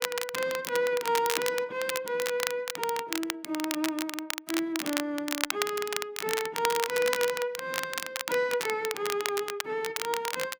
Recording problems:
crackling; vinyl, SNR 3 dB

